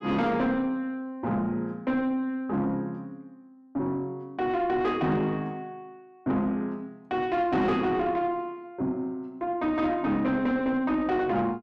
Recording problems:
distorted audio; soft clipping, signal-to-distortion ratio 10 dB

